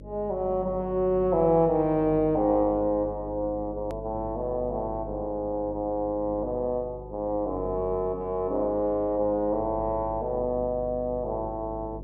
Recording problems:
hum; 50 Hz, harmonics up to 600 Hz, SNR 14 dB
hard cut with a click; at 4 s

